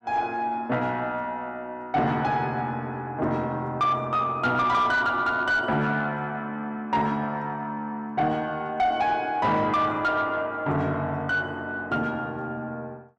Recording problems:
distortion; soft clipping, signal-to-distortion ratio 12 dB

